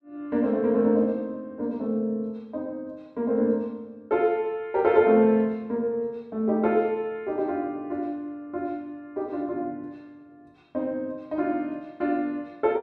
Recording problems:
none

